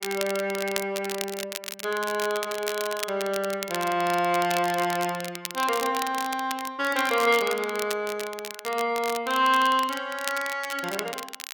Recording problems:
crackle; vinyl, SNR 9 dB

